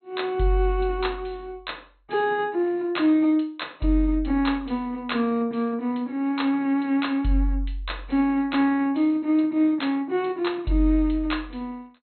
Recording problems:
treble missing; nothing above 4.2 kHz

